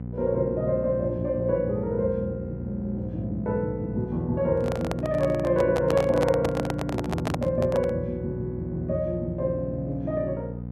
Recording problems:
electrical hum; 60 Hz, harmonics up to 720 Hz, SNR 8 dB
handling noise; from 4.5 to 8 s; peak +2 dB vs average level

